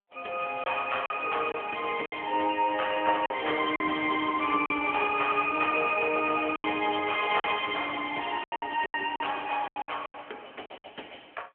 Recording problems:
telephone audio; 240 Hz to 3.3 kHz, AMR-NB
packet loss; 8% of the sound replaced, filled with silence

